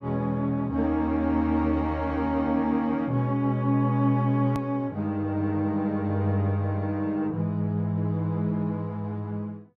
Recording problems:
click at an edit; at 4.5 s

